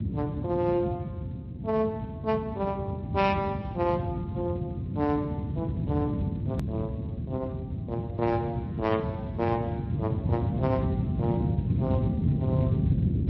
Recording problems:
codec artefacts; MP3, then Speex, log-spectral distance 2 dB
rumble; below 200 Hz, SNR -1 dB
hard cut with a click; at 6.5 s

